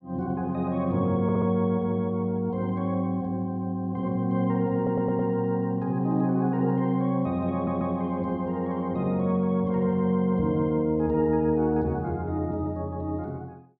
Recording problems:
audio stuttering; at 1 s, at 5 s and at 7.5 s

